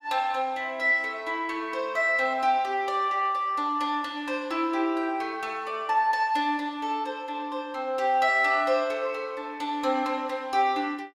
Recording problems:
none

